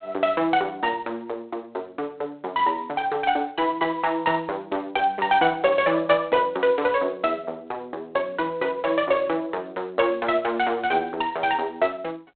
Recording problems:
phone line; 300 Hz to 3.7 kHz, G.726

